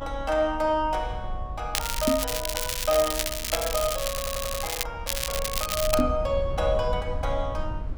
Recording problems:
rumble; below 74 Hz, SNR 8 dB
crackle; from 2 to 5 s and at 5 s; loose cable, SNR 1 dB
knock on the microphone; at 2 s and at 6 s; peak +6 dB vs average level
stutter; at 4 s

